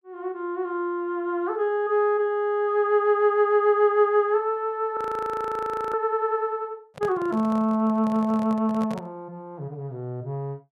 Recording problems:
frozen audio; at 5 s for 1 s
handling noise; from 7 to 9 s; peak -9 dB vs average level

